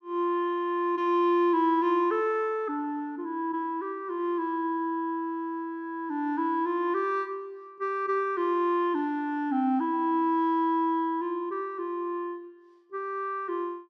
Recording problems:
none

